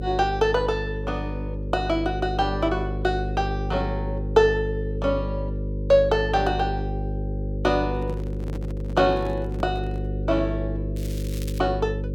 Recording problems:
hum; 50 Hz, harmonics up to 550 Hz, SNR 5 dB
microphone handling noise; from 8 to 10 s; peak -8 dB vs average level
crackle; at 11 s; loose cable, SNR 17 dB

